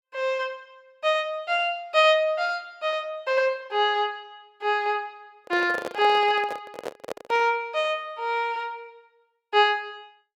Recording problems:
handling noise; from 5.5 to 7.5 s; peak -4 dB vs average level

